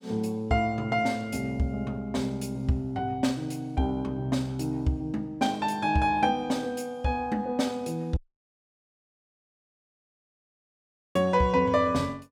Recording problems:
dropout; at 8 s for 3 s

